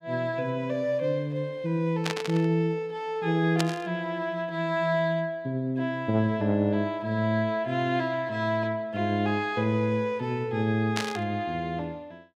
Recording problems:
burst of static; at 2 s, at 3.5 s and at 11 s; peak +3 dB vs average level

